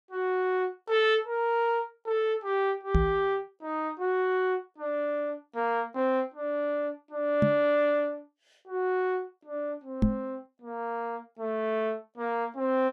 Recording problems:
microphone bump; at 3 s, at 7.5 s and at 10 s; peak +9 dB vs average level

